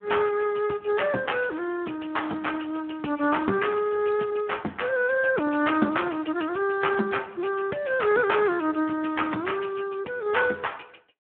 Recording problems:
telephone audio; 260 Hz to 3.3 kHz, Speex
crackling; from 1.5 to 4 s and at 6 s; loose cable, SNR 30 dB

